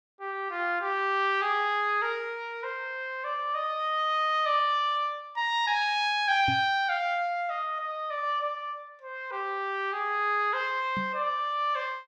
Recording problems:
knock on the microphone; at 6.5 s and at 11 s; peak -2 dB vs average level

